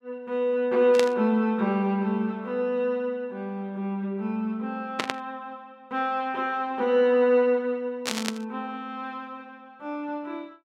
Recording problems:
burst of static; at 1 s, at 5 s and at 8 s; peak +3 dB vs average level

